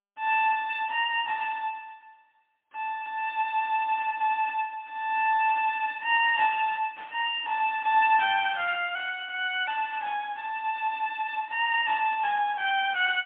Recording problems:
telephone audio; 450 Hz to 3.5 kHz, AMR-NB, then MP3
static burst; 5 times, first at 4 s; peak -16 dB vs average level

